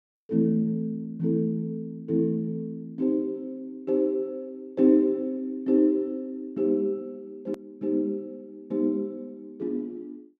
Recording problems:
hard cut with a click; at 7.5 s

